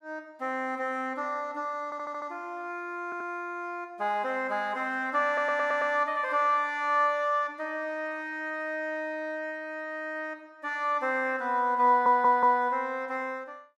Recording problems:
audio stuttering; 4 times, first at 2 s

